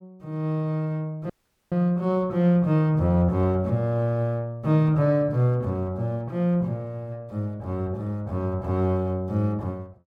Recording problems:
dropout; at 1.5 s

